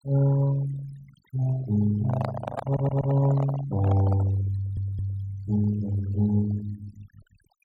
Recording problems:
noise reduction artefacts; signal-to-artefact ratio 17 dB
microphone handling noise; from 2 to 4.5 s; peak -1 dB vs average level
audio stuttering; at 2.5 s and at 4.5 s

